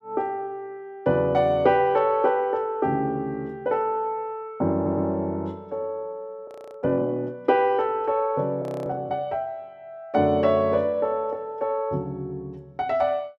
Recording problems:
stutter; at 4.5 s
audio freezing; at 6.5 s and at 8.5 s

